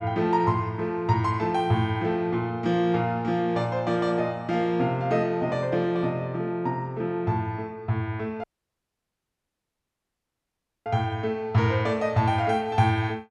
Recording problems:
dropout; at 8.5 s for 2.5 s

